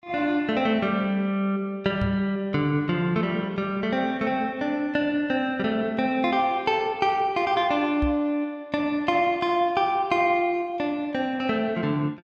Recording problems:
knock on the microphone; at 2 s and at 8 s; peak -1 dB vs average level

